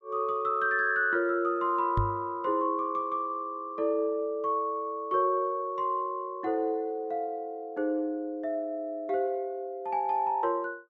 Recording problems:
microphone bump; at 2 s; peak +3 dB vs average level

